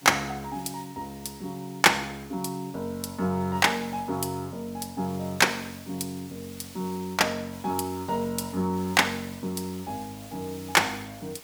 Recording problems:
hiss; slope 0 dB per octave, SNR 18 dB

